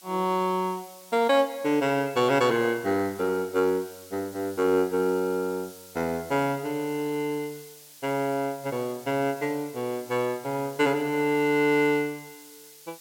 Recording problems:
hiss; SNR 20 dB

